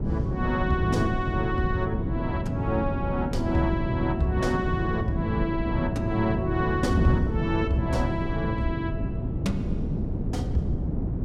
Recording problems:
wind on the microphone; below 220 Hz, SNR 1 dB

